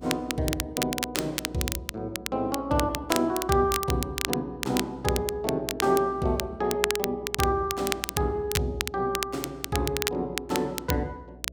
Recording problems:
hum; 60 Hz, harmonics up to 660 Hz, SNR 20 dB
crackle; vinyl, SNR 4 dB

